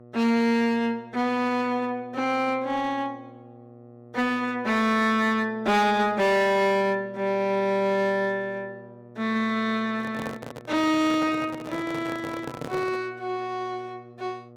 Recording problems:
distortion; hard clipping, uneven, signal-to-distortion ratio 11 dB
electrical hum; 60 Hz, harmonics up to 1.2 kHz, SNR 23 dB
handling noise; from 10 to 13 s; peak -5 dB vs average level

